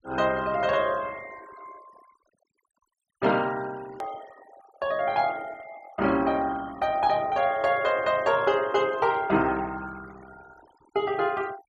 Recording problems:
denoising artefacts; signal-to-artefact ratio 21 dB
click at an edit; at 4 s

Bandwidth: 12.5 kHz